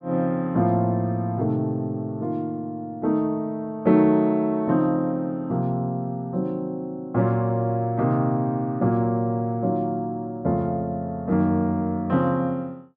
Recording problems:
none

